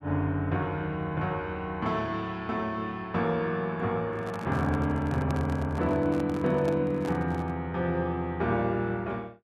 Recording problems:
microphone handling noise; from 4 to 7.5 s; peak -4 dB vs average level

